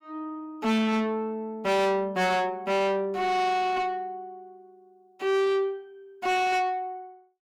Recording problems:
distortion; soft clipping, signal-to-distortion ratio 7 dB

